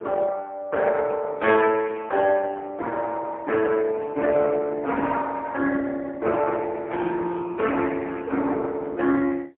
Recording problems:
telephone audio; 240 Hz to 2.8 kHz, AMR-NB, then MP3

